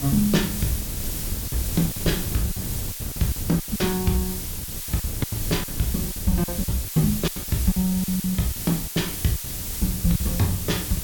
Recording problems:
hiss; slope +2 dB per octave, SNR 4 dB
wind noise; below 150 Hz, SNR 9 dB
lost packets; 12% of the sound replaced, filled with silence

